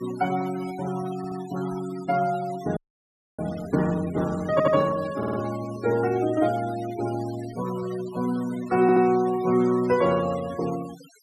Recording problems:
noise reduction artefacts; signal-to-artefact ratio 17 dB
audio stuttering; 4 times, first at 1 s
audio freezing; at 3 s for 0.5 s

